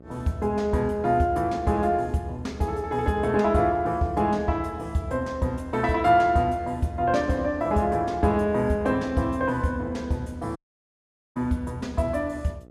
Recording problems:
electrical hum; 60 Hz, harmonics up to 1.3 kHz, SNR 24 dB
dropout; at 11 s for 1 s

